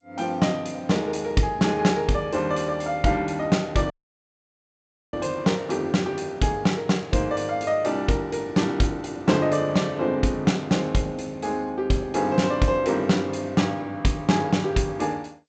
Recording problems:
lossy compression; G.722, log-spectral distance 2 dB, nothing above 7.6 kHz
dropout; at 4 s for 1 s

